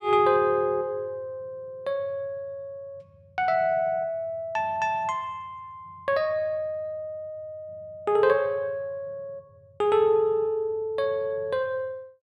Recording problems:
none

